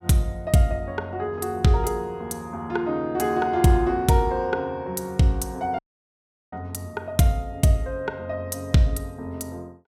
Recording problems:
audio cutting out; at 6 s for 0.5 s

